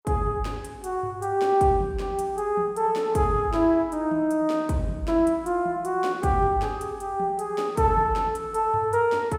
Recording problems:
none

